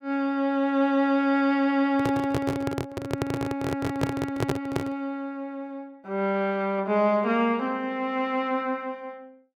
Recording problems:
microphone handling noise; from 2 to 5 s; peak +4 dB vs average level

